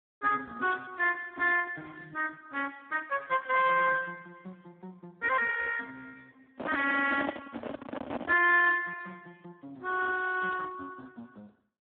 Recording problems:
phone line; 220 Hz to 2.5 kHz, Speex
microphone handling noise; from 6.5 to 8.5 s; peak 0 dB vs average level

